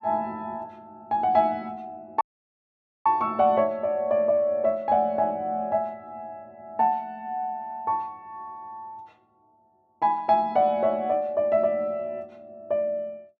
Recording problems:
dropout; at 2 s for 1 s

